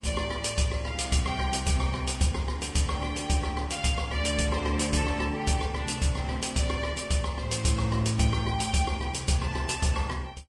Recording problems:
lossy codec; Vorbis, log-spectral distance 4 dB

